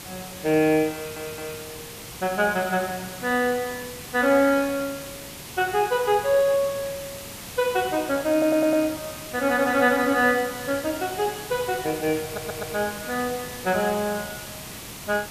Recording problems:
hiss; slope -2 dB per octave, SNR 12 dB
audio stuttering; at 1 s, at 8.5 s and at 12 s

